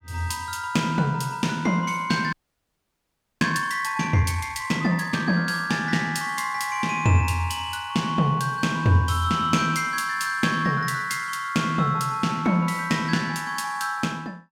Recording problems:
frozen audio; at 2.5 s for 1 s

